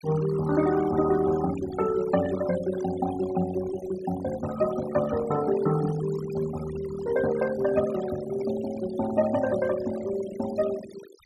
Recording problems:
noise reduction artefacts; signal-to-artefact ratio 14 dB

